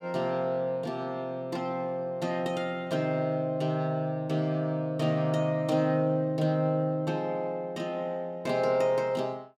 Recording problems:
none

